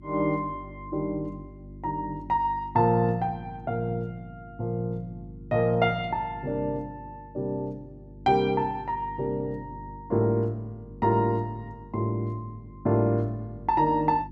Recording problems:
hum; 50 Hz, harmonics up to 350 Hz, SNR 18 dB

